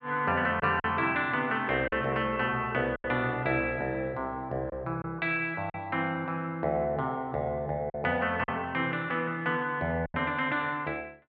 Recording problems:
packet loss; 4% of the sound replaced, filled with silence

